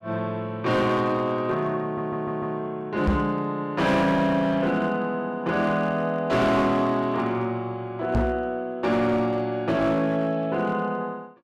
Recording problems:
distortion; hard clipping, signal-to-distortion ratio 12 dB
audio stuttering; at 2 s
knock on the microphone; at 3 s and at 8 s; peak +5 dB vs average level

